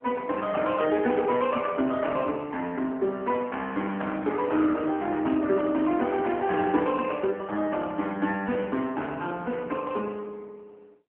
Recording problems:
telephone audio; 150 Hz to 3.5 kHz, AMR-NB

